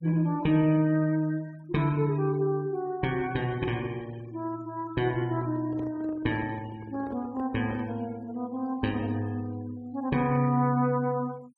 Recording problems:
denoising artefacts; signal-to-artefact ratio 25 dB
handling noise; from 5 to 8 s; peak -8 dB vs average level

